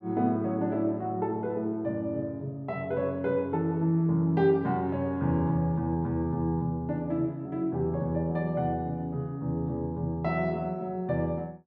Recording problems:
none

